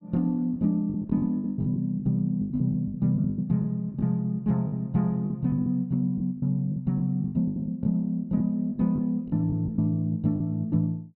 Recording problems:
lost packets; 13% of the sound replaced, filled with the last packet

